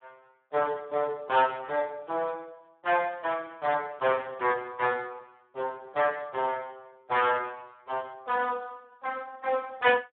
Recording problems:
phone line; 320 Hz to 3.4 kHz, Speex

